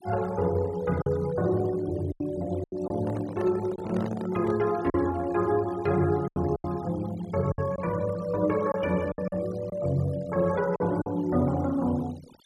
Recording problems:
noise reduction artefacts; signal-to-artefact ratio 20 dB
lost packets; 6% of the sound replaced, filled with silence
microphone handling noise; from 3 to 4.5 s; peak -5 dB vs average level

